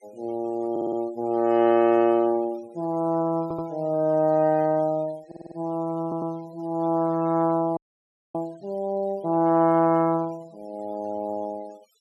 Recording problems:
denoising artefacts; signal-to-artefact ratio 28 dB
audio stuttering; 4 times, first at 0.5 s
frozen audio; at 8 s for 0.5 s

